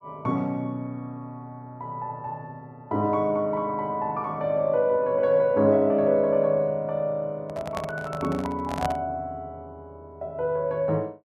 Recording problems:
handling noise; from 7.5 to 9 s; peak 0 dB vs average level

